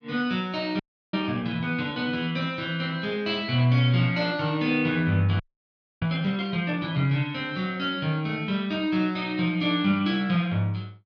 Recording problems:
audio freezing; at 1 s and at 5.5 s for 0.5 s

